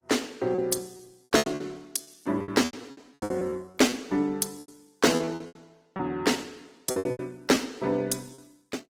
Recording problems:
codec artefacts; Opus, log-spectral distance 5 dB
packet loss; 17% of the sound replaced, filled with repeated pitch periods

